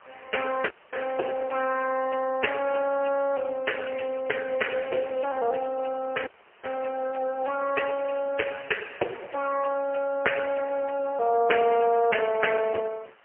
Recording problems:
telephone audio; 320 Hz to 3 kHz, AMR-NB, then MP3
hiss; SNR 27 dB
dropout; at 0.5 s and at 6.5 s

